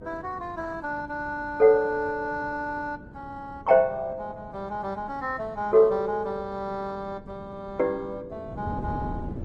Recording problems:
lossy compression; Opus, then Opus, log-spectral distance 2 dB
wind noise; below 270 Hz, SNR 16 dB

